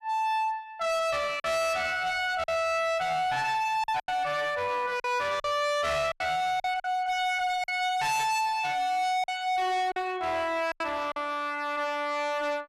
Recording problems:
distorted audio; hard clipping, signal-to-distortion ratio 7 dB
packet loss; 5% of the sound replaced, filled with silence

